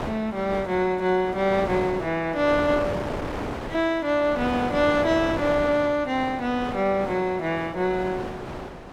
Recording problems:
wind on the microphone; below 1 kHz, SNR 9 dB

